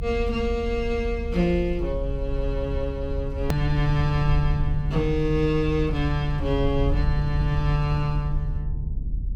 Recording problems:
low-frequency rumble; below 72 Hz, SNR 4 dB
hard cut with a click; at 3.5 s

